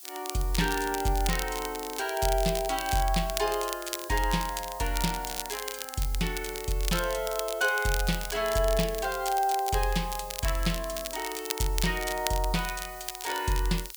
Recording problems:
background hiss; SNR 14 dB
crackling; vinyl, SNR 7 dB

